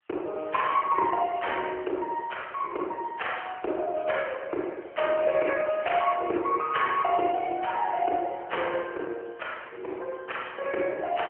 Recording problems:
phone line; 300 Hz to 3.1 kHz, AMR-NB

